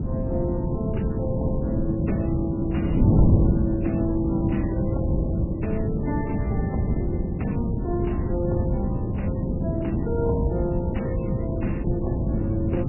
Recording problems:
lossy compression; AAC, then MP3, log-spectral distance 3 dB, nothing above 2.9 kHz
wind on the microphone; below 220 Hz, SNR -3 dB

